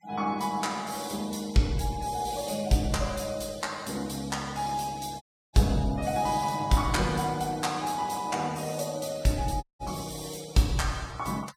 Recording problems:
denoising artefacts; signal-to-artefact ratio 21 dB
dropout; at 5 s and at 9.5 s

